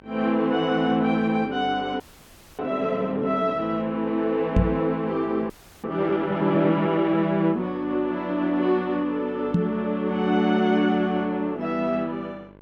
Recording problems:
hum; 50 Hz, harmonics up to 2.2 kHz, SNR 24 dB
audio freezing; at 2 s for 0.5 s and at 5.5 s
microphone thump; at 4.5 s and at 9.5 s; peak +7 dB vs average level

